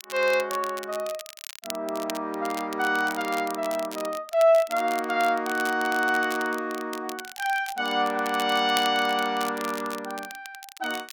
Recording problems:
crackling; vinyl, SNR 14 dB

